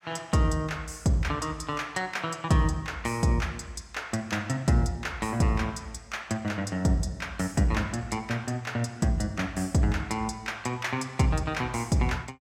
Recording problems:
none

